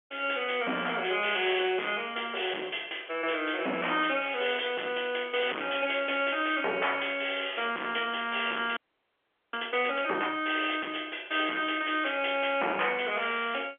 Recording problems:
phone line; 280 Hz to 3.3 kHz, G.711
distorted audio; hard clipping, signal-to-distortion ratio 10 dB
audio freezing; at 9 s for 1 s

